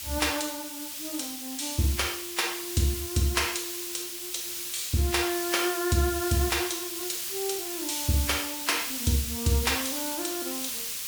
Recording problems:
background hiss; SNR 3 dB

